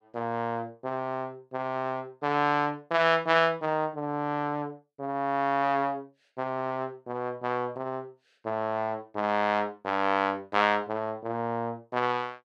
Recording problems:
none

